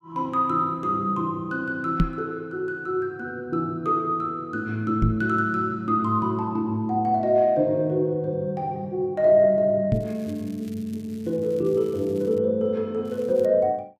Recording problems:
microphone thump; at 2 s, at 5 s and at 10 s; peak +7 dB vs average level
crackle; from 10 to 12 s and at 13 s; loose cable, SNR 28 dB

